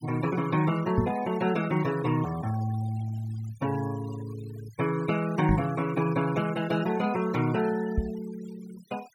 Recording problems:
denoising artefacts; signal-to-artefact ratio 18 dB
microphone thump; at 1 s, at 5.5 s and at 8 s; peak +6 dB vs average level

